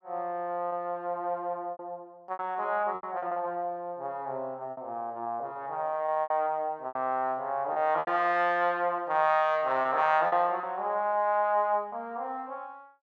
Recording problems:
lost packets; 8% of the sound replaced, filled with repeated pitch periods

